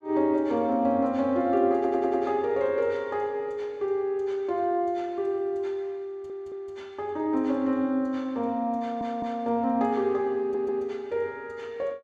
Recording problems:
audio stuttering; 4 times, first at 2 s

